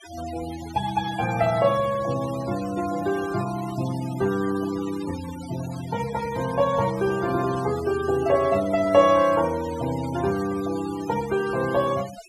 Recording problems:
noise reduction artefacts; signal-to-artefact ratio 15 dB

